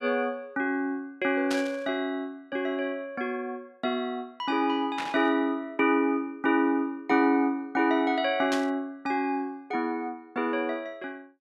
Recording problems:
burst of static; at 1.5 s, at 5 s and at 8.5 s; peak -1 dB vs average level

